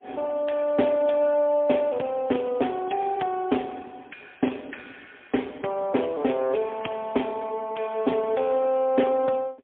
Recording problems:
phone line; 170 Hz to 3.5 kHz, AMR-NB, then MP3

